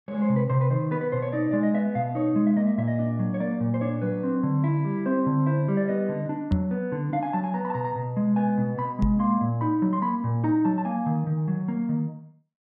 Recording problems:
microphone bump; at 6.5 s and at 9 s; peak +3 dB vs average level

